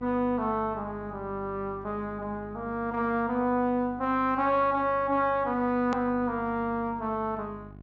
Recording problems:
low-pass filter; nothing above 8 kHz
mains hum; 50 Hz, harmonics up to 800 Hz, SNR 19 dB
click at an edit; at 6 s

